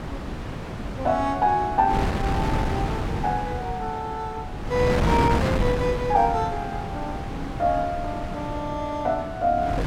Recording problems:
wind on the microphone; below 570 Hz, SNR 3 dB

